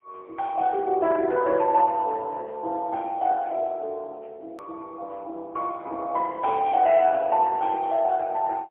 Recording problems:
phone line; 300 Hz to 3.2 kHz, AMR-NB, then MP3
click at an edit; at 4.5 s

